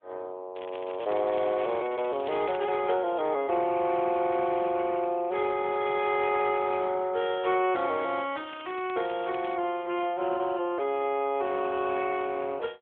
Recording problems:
telephone audio; 240 Hz to 3.6 kHz, AMR-NB
crackle; from 0.5 to 2.5 s and from 8.5 to 9.5 s; loose cable, SNR 19 dB

